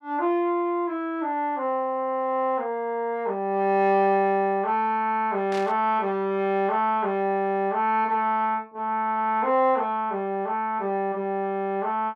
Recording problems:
static burst; at 5.5 s; peak -9 dB vs average level

